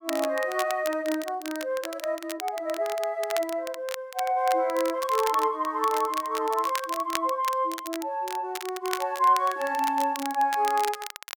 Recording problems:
crackling; vinyl, SNR 11 dB

